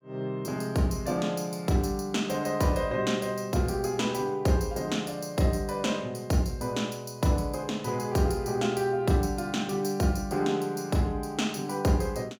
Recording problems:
none

